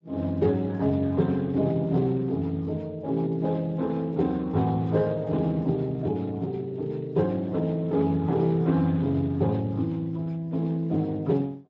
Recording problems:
lossy codec; Speex, log-spectral distance 2 dB

